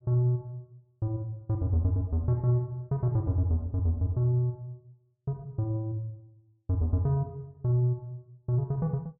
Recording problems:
none

